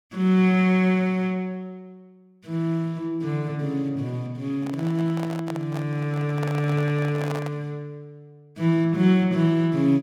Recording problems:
handling noise; from 4.5 to 7.5 s; peak -6 dB vs average level

